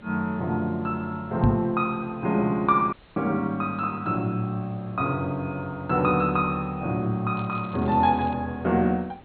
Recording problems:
treble cut off; nothing above 4.3 kHz
background hiss; SNR 24 dB
knock on the microphone; at 1.5 s; peak +7 dB vs average level
audio cutting out; at 3 s
crackling; at 7.5 s; loose cable, SNR 27 dB

